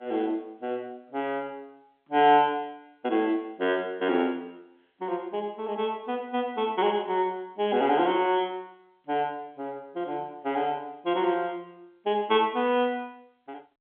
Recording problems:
phone line; 240 Hz to 3.5 kHz, G.711

